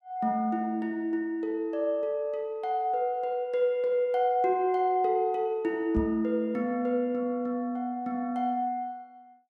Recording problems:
microphone thump; at 6 s; peak 0 dB vs average level

